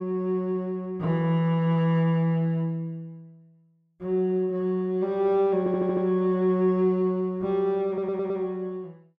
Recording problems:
audio stuttering; at 5.5 s and at 8 s

